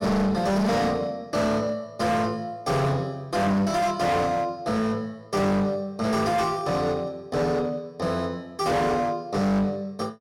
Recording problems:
distorted audio; hard clipping, uneven, signal-to-distortion ratio 7 dB

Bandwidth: 16 kHz